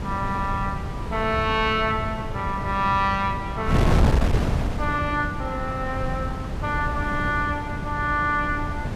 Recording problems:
wind noise; below 240 Hz, SNR 2 dB

